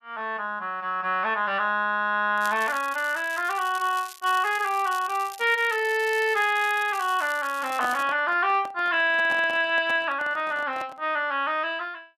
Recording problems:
crackle; from 2.5 to 8 s; loose cable, SNR 18 dB
microphone handling noise; from 7.5 to 11 s; peak -7 dB vs average level

